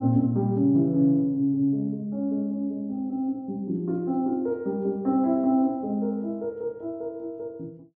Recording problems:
none

